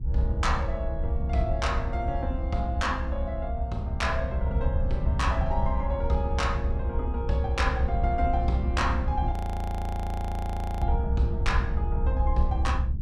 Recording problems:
rumble; below 74 Hz, SNR -2 dB
audio freezing; at 9.5 s for 1.5 s

